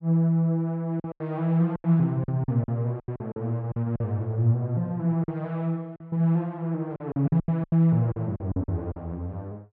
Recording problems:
packet loss; 12% of the sound replaced, filled with silence

